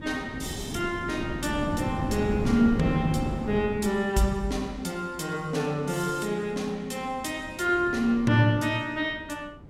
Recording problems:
wind on the microphone; below 290 Hz, SNR 6 dB

